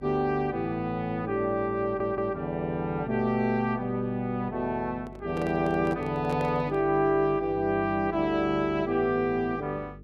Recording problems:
hum; 50 Hz, harmonics up to 450 Hz, SNR 20 dB
stutter; at 2 s
handling noise; from 5 to 7 s; peak -6 dB vs average level

